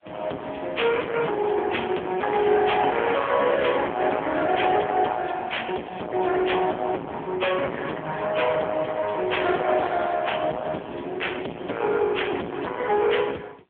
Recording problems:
phone line; 240 Hz to 3.3 kHz, AMR-NB
distortion; soft clipping, signal-to-distortion ratio 9 dB

